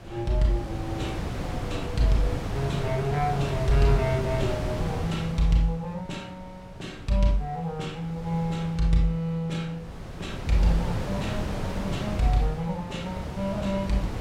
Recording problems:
wind noise; below 470 Hz, SNR 5 dB

